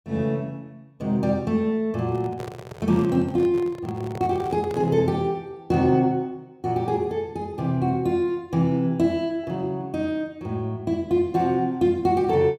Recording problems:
handling noise; from 2 to 5 s; peak -8 dB vs average level

